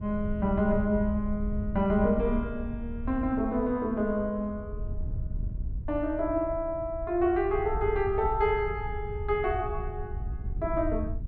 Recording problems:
wind on the microphone; below 88 Hz, SNR 8 dB

